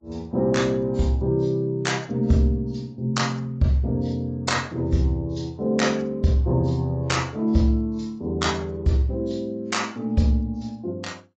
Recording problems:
lossy codec; AAC, log-spectral distance 2 dB, nothing above 7.6 kHz

